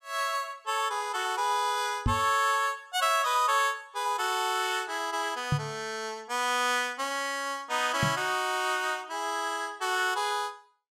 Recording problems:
knock on the microphone; at 2 s, at 5.5 s and at 8 s; peak +4 dB vs average level

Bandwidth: 15.5 kHz